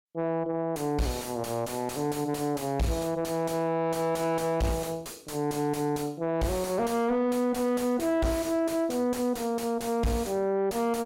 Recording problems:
distorted audio; soft clipping, signal-to-distortion ratio 6 dB

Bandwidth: 16.5 kHz